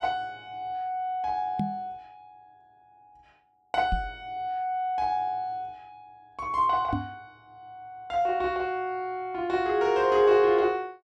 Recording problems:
microphone thump; at 1.5 s, at 4 s and at 7 s; peak +1 dB vs average level

